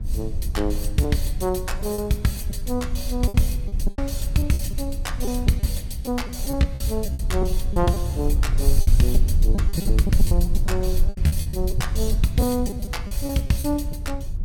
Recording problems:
low-frequency rumble; below 62 Hz, SNR 1 dB
wind noise; below 210 Hz, SNR 20 dB
lost packets; 12% of the sound replaced, filled with repeated pitch periods

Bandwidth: 17 kHz